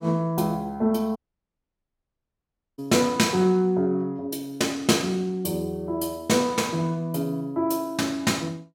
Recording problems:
audio cutting out; at 1 s for 1.5 s

